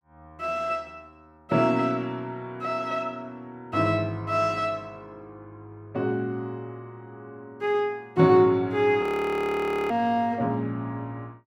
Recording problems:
audio freezing; at 9 s for 1 s

